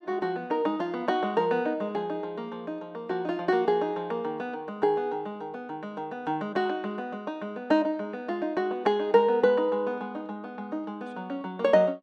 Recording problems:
none

